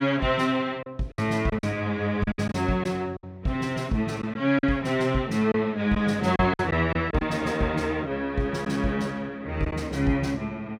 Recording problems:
lost packets; 6% of the sound replaced, filled with silence

